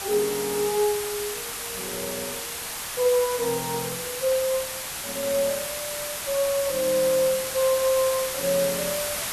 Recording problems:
hiss; slope 0 dB per octave, SNR 4 dB

